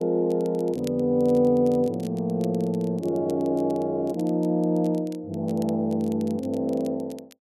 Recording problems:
crackle; vinyl, SNR 26 dB

